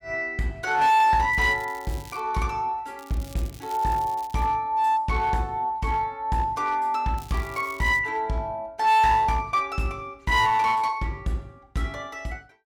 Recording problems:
distortion; hard clipping, uneven, signal-to-distortion ratio 10 dB
crackle; at 1.5 s, from 3 to 4.5 s and at 7 s; loose cable, SNR 23 dB

